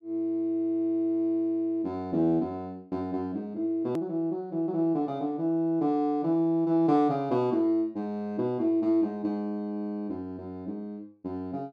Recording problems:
edit click; at 4 s

